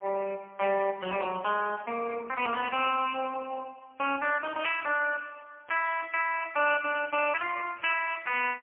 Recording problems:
phone line; 190 Hz to 3.2 kHz, AMR-NB, then MP3

